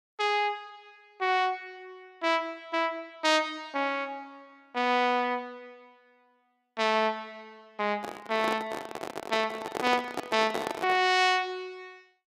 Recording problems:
microphone handling noise; from 8 to 11 s; peak 0 dB vs average level

